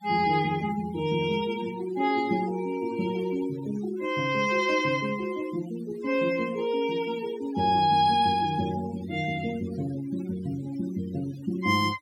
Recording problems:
denoising artefacts; signal-to-artefact ratio 18 dB

